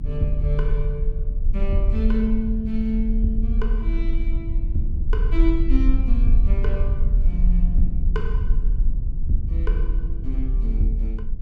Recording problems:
low-frequency rumble; below 42 Hz, strongest tone 36 Hz, SNR -4 dB

